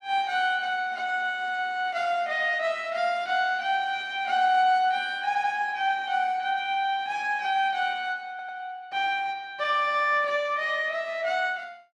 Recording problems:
audio stuttering; at 5.5 s and at 8.5 s

